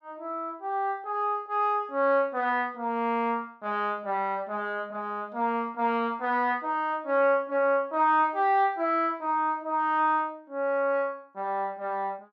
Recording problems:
none

